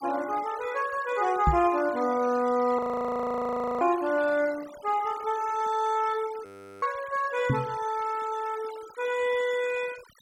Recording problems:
noise reduction artefacts; signal-to-artefact ratio 19 dB
microphone bump; at 1.5 s and at 7.5 s; peak +5 dB vs average level
frozen audio; at 3 s for 1 s and at 6.5 s

